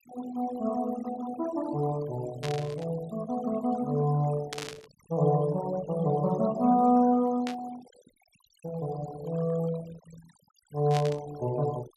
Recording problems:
noise reduction artefacts; signal-to-artefact ratio 20 dB
burst of static; 4 times, first at 2.5 s; peak -4 dB vs average level

